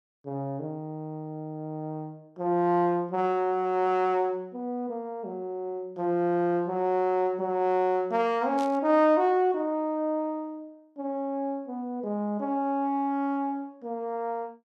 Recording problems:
static burst; at 8.5 s; peak -12 dB vs average level

